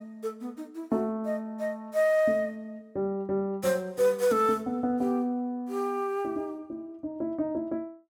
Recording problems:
none

